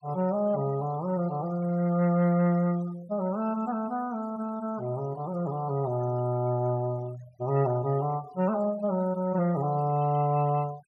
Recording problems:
denoising artefacts; signal-to-artefact ratio 23 dB

